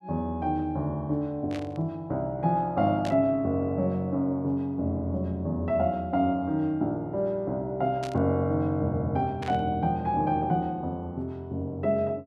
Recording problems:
burst of static; 4 times, first at 1.5 s; peak -8 dB vs average level

